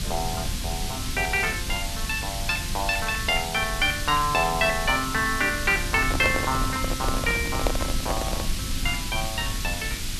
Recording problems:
mains hum; 50 Hz, harmonics up to 350 Hz, SNR 17 dB
background hiss; slope +3 dB per octave, SNR 6 dB
rumble; below 94 Hz, SNR 9 dB
microphone handling noise; from 6 to 8.5 s; peak +3 dB vs average level

